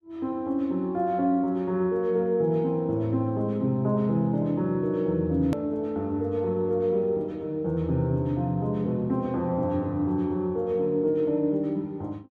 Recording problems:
click at an edit; at 5.5 s

